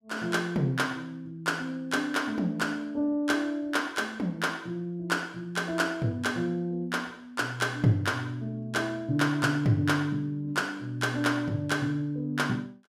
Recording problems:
none

